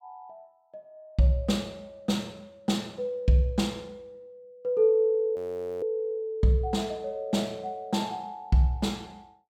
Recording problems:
frozen audio; at 5.5 s

